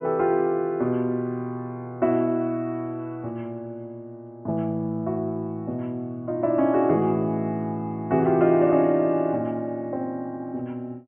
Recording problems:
low-pass filter; nothing above 3.3 kHz

